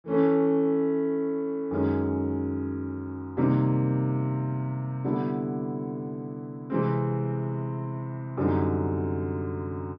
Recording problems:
treble missing; nothing above 5.8 kHz

